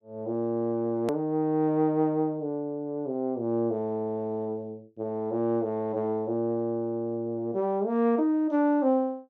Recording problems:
click at an edit; at 1 s

